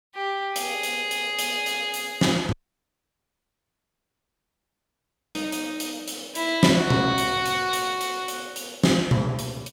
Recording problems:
audio cutting out; at 2.5 s for 3 s

